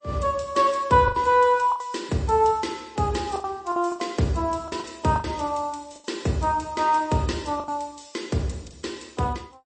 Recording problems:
lossy codec; MP3, log-spectral distance 4 dB, nothing above 8.2 kHz
lost packets; 7% of the sound replaced, filled with the last packet

